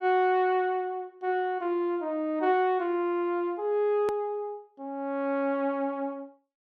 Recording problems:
edit click; at 4 s

